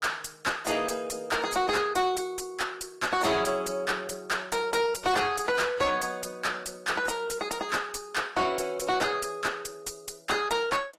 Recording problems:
lossy codec; AAC, log-spectral distance 4 dB
distorted audio; soft clipping, signal-to-distortion ratio 7 dB

